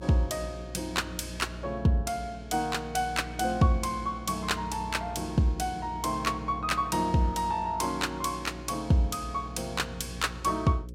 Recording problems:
electrical hum; 60 Hz, harmonics up to 540 Hz, SNR 14 dB

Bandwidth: 16 kHz